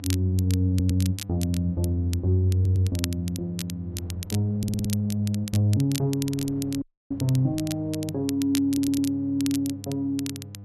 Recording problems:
electrical hum; 50 Hz, harmonics up to 700 Hz, SNR 15 dB
wind on the microphone; below 400 Hz, SNR 27 dB
crackling; vinyl, SNR 13 dB
stutter; 4 times, first at 0.5 s
audio cutting out; at 7 s

